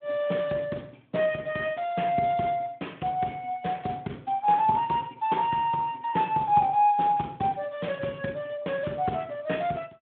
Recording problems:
telephone audio; 150 Hz to 3.6 kHz, Speex

